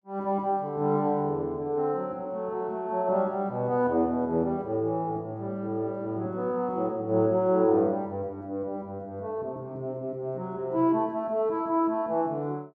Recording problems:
none

